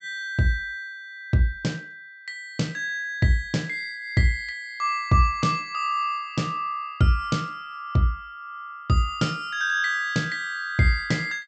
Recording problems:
treble cut off; nothing above 8 kHz

